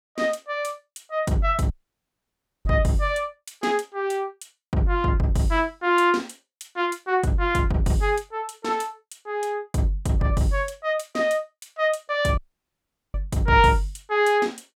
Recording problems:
dropout; at 1.5 s for 1 s and at 12 s for 1 s

